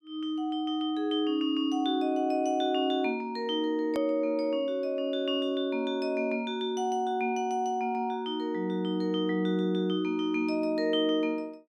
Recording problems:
edit click; at 4 s

